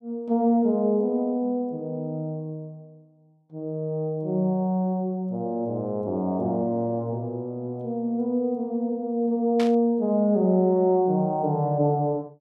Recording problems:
burst of static; at 9.5 s; peak -6 dB vs average level

